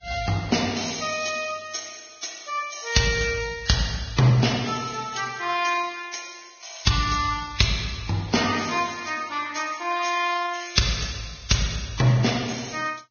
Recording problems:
lossy compression; Vorbis, log-spectral distance 7 dB, nothing above 6.5 kHz

